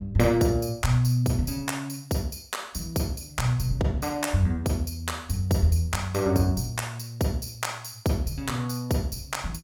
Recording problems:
none

